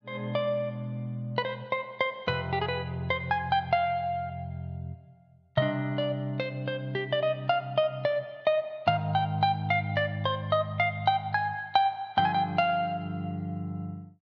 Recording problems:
none

